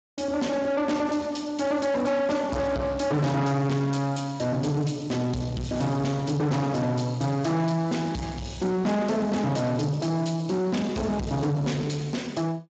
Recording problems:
lossy compression; Speex, log-spectral distance 4 dB, nothing above 7.6 kHz
distorted audio; soft clipping, signal-to-distortion ratio 6 dB

